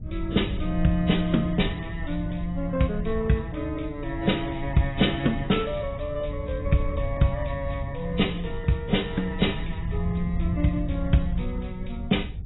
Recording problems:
lossy codec; AAC, log-spectral distance 6 dB, nothing above 3.8 kHz
wind on the microphone; below 100 Hz, SNR 7 dB

